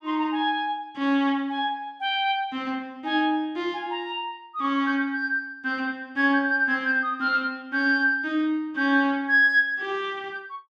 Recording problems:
none

